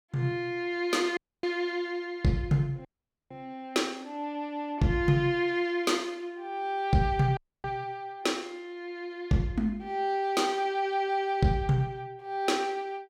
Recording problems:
dropout; at 1 s, at 3 s and at 7.5 s

